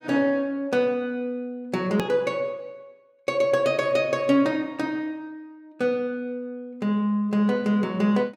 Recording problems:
edit click; at 2 s

